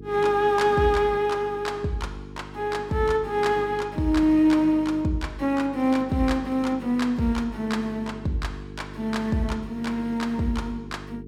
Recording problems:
hum; 50 Hz, harmonics up to 450 Hz, SNR 17 dB

